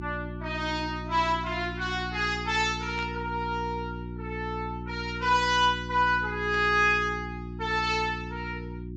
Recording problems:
treble cut off; nothing above 8 kHz
hum; 60 Hz, harmonics up to 360 Hz, SNR 10 dB
burst of static; at 3 s and at 6.5 s; peak -12 dB vs average level

